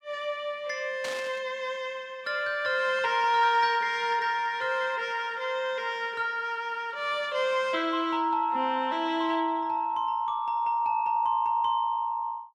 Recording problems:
burst of static; at 1 s; peak -6 dB vs average level

